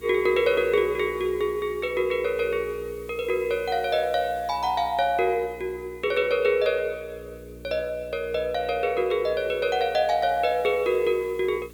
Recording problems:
electrical hum; 60 Hz, harmonics up to 420 Hz, SNR 22 dB
hiss; slope 0 dB per octave, SNR 27 dB

